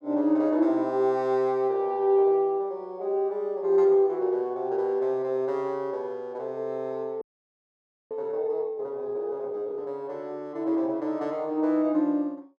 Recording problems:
audio freezing; at 7 s for 1 s

